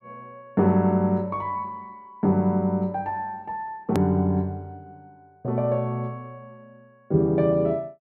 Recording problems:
edit click; at 4 s

